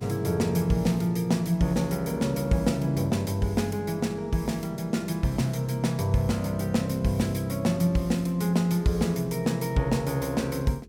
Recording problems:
electrical hum; 50 Hz, harmonics up to 450 Hz, SNR 25 dB

